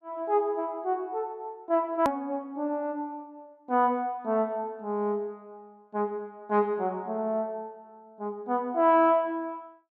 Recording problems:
edit click; at 2 s

